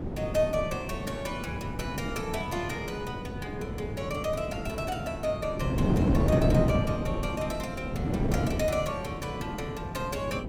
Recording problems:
wind on the microphone; below 330 Hz, SNR -1 dB

